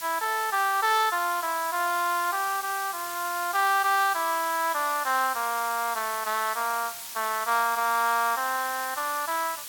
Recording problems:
hiss; slope +3 dB per octave, SNR 9 dB

